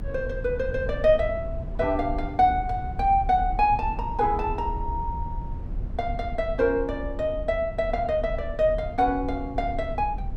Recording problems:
rumble; below 86 Hz, SNR 9 dB

